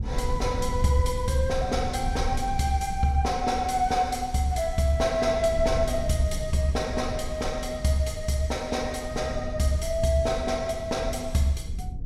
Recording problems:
low-frequency rumble; below 86 Hz, SNR 8 dB

